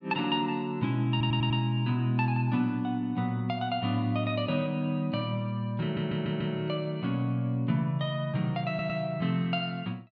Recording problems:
audio stuttering; at 1 s, at 6 s and at 8.5 s

